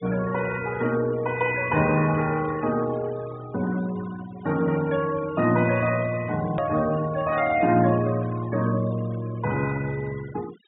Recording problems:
low-pass filter; nothing above 4 kHz
noise reduction artefacts; signal-to-artefact ratio 17 dB
click at an edit; at 6.5 s

